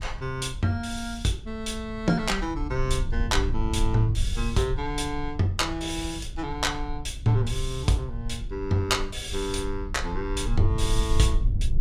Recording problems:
rumble; below 64 Hz, SNR 5 dB

